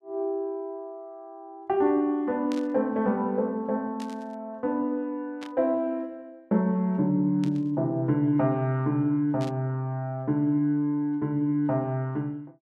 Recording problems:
burst of static; 5 times, first at 2.5 s; peak -11 dB vs average level

